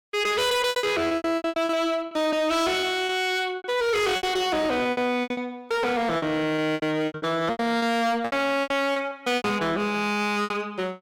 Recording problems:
distortion; hard clipping, signal-to-distortion ratio 6 dB
lost packets; 17% of the sound replaced, filled with repeated pitch periods

